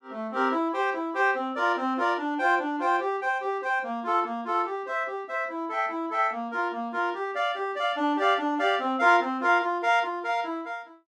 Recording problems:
none

